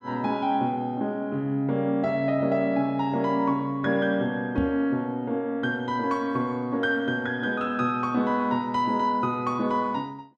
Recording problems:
knock on the microphone; at 4.5 s; peak -1 dB vs average level

